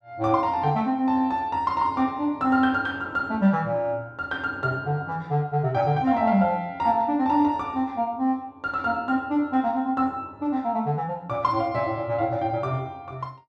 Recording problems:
none

